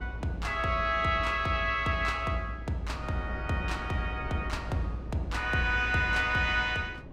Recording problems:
wind on the microphone; below 400 Hz, SNR 15 dB

